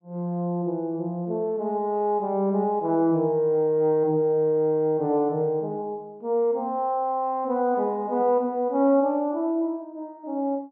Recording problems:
none

